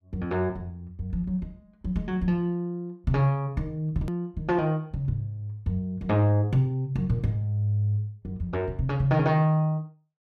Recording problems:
edit click; at 4 s

